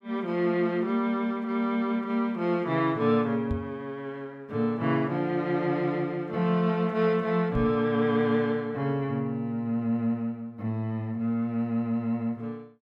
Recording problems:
knock on the microphone; at 3.5 s and at 7.5 s; peak 0 dB vs average level

